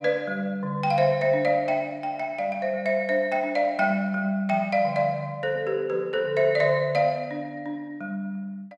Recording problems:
none

